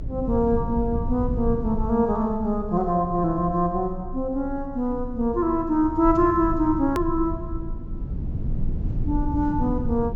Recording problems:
treble missing; nothing above 8 kHz
rumble; below 120 Hz, strongest tone 24 Hz, SNR 8 dB
edit click; at 7 s

